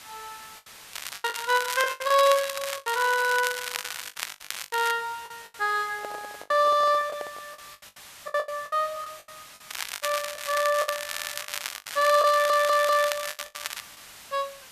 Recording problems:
hiss; SNR 20 dB
packet loss; 12% of the sound replaced, filled with the last packet
crackling; from 1 to 5 s and from 9.5 to 14 s; loose cable, SNR 8 dB
microphone handling noise; from 6 to 7.5 s; peak -9 dB vs average level
stutter; at 11 s and at 12 s

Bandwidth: 14.5 kHz